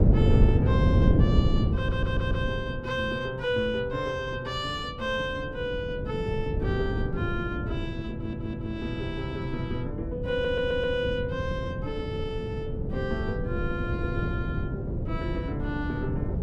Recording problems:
wind on the microphone; below 190 Hz, SNR -2 dB
stutter; at 2 s, at 8 s and at 10 s

